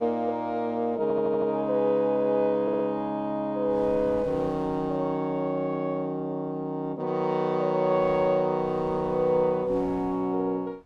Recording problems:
wind on the microphone; below 590 Hz, SNR 21 dB
audio stuttering; at 1 s and at 2.5 s

